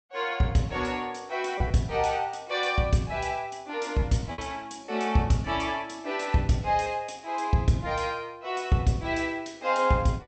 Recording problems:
treble cut off; nothing above 8 kHz
lost packets; 2% of the sound replaced, filled with repeated pitch periods

